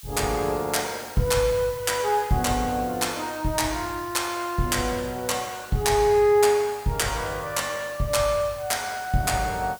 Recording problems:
background hiss; slope +5 dB per octave, SNR 19 dB

